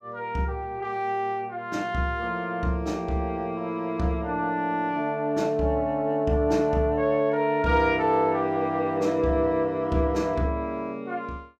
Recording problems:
none

